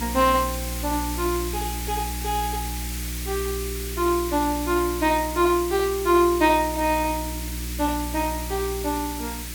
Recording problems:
electrical hum; 60 Hz, harmonics up to 360 Hz, SNR 9 dB
background hiss; SNR 9 dB

